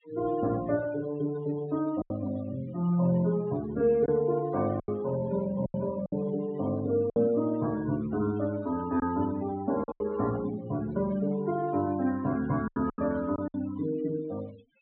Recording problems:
treble missing; nothing above 4 kHz
noise reduction artefacts; signal-to-artefact ratio 17 dB
packet loss; 5% of the sound replaced, filled with silence

